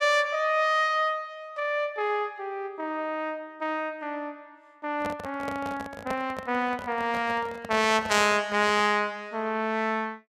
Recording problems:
handling noise; from 5 to 9 s; peak -4 dB vs average level

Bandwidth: 14.5 kHz